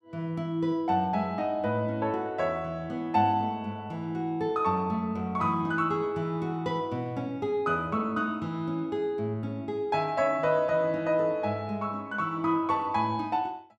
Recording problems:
none

